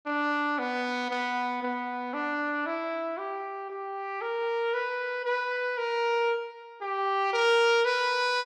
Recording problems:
none

